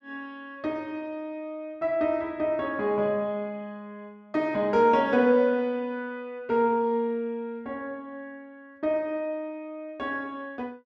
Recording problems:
none

